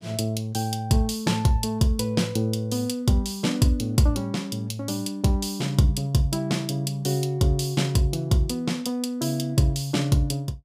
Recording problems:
none

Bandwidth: 15 kHz